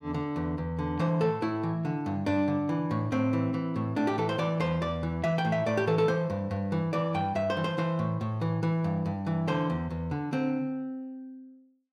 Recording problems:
none

